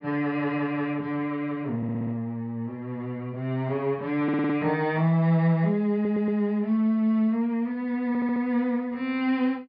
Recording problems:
treble missing; nothing above 5.5 kHz
audio stuttering; 4 times, first at 2 s

